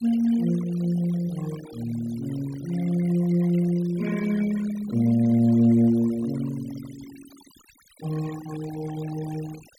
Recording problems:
denoising artefacts; signal-to-artefact ratio 19 dB

